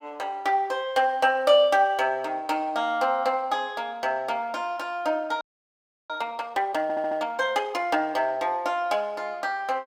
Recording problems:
audio freezing; at 5.5 s for 0.5 s
stutter; at 7 s

